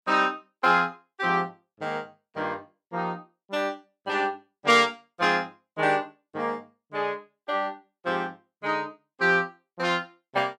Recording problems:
none

